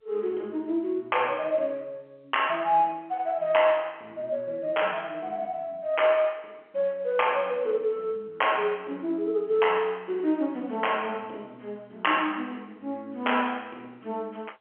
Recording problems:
phone line; 260 Hz to 3.3 kHz, G.711

